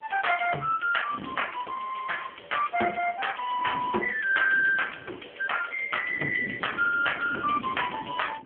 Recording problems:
phone line; 260 Hz to 2.9 kHz, AMR-NB
wind on the microphone; below 370 Hz, SNR 14 dB

